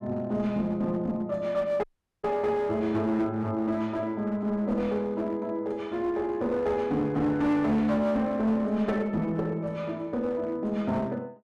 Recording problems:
distortion; hard clipping, uneven, signal-to-distortion ratio 10 dB
dropout; at 2 s

